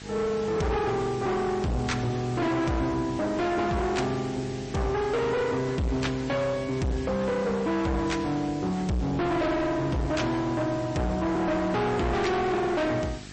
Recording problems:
lossy compression; MP3, log-spectral distance 4 dB, nothing above 8.2 kHz
distortion; hard clipping, signal-to-distortion ratio 6 dB
mains hum; 50 Hz, harmonics up to 1.1 kHz, SNR 18 dB
background hiss; SNR 18 dB

